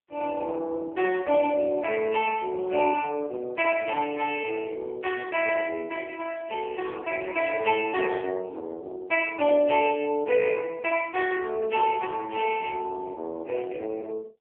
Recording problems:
phone line; 300 Hz to 3.1 kHz, AMR-NB

